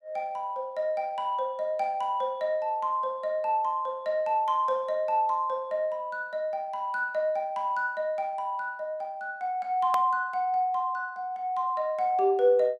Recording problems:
click at an edit; at 10 s

